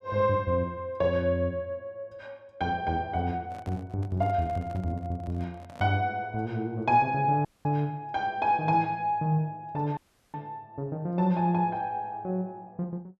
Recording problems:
microphone handling noise; from 3.5 to 6 s; peak -13 dB vs average level
audio cutting out; at 7.5 s and at 10 s

